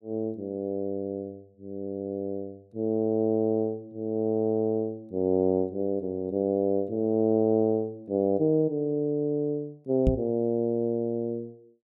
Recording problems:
microphone thump; at 10 s; peak +6 dB vs average level

